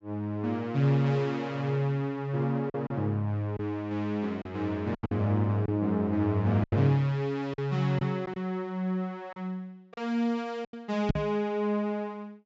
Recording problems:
treble missing; nothing above 8 kHz
lost packets; 5% of the sound replaced, filled with silence
knock on the microphone; at 11 s; peak +5 dB vs average level

